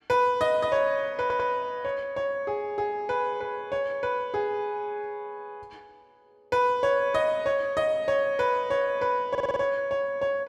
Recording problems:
audio stuttering; at 1 s and at 9.5 s

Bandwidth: 14 kHz